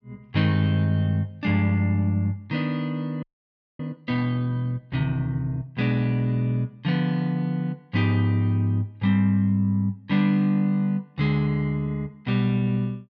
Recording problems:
frozen audio; at 3 s for 0.5 s

